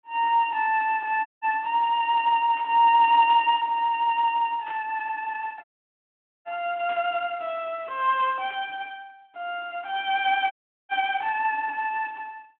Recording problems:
phone line; 260 Hz to 3.4 kHz, Speex
audio cutting out; at 1.5 s, at 5.5 s for 1 s and at 11 s
static burst; 4 times, first at 2.5 s; peak -13 dB vs average level

